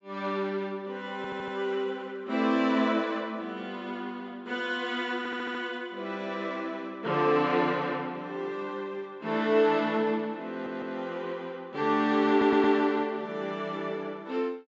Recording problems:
treble missing; nothing above 8 kHz
stutter; 4 times, first at 1 s

